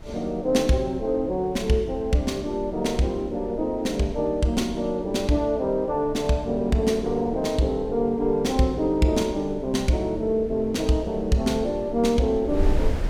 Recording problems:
wind noise; below 68 Hz, SNR 15 dB

